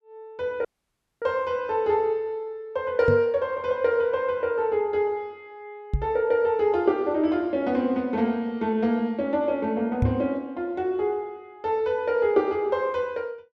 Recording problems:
dropout; at 0.5 s for 0.5 s
microphone bump; at 3 s, at 6 s and at 10 s; peak +5 dB vs average level

